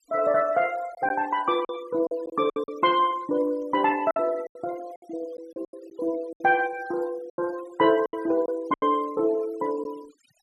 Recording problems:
noise reduction artefacts; signal-to-artefact ratio 22 dB
lost packets; 9% of the sound replaced, filled with silence

